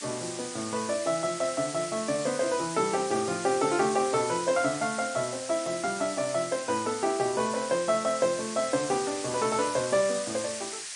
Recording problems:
lossy compression; MP3, log-spectral distance 13 dB
hiss; SNR 8 dB

